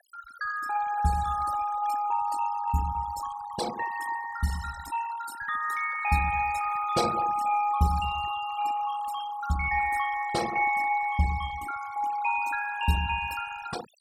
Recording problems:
denoising artefacts; signal-to-artefact ratio 13 dB

